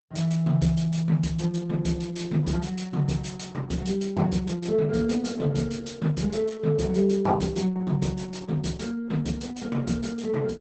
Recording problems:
codec artefacts; Opus, log-spectral distance 4 dB, nothing above 8 kHz

